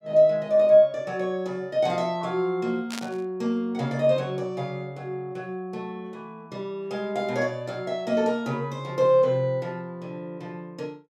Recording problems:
static burst; at 3 s; peak -5 dB vs average level

